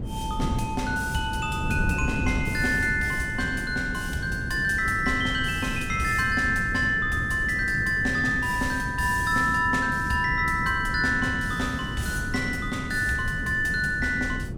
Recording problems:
wind noise; below 220 Hz, SNR 8 dB

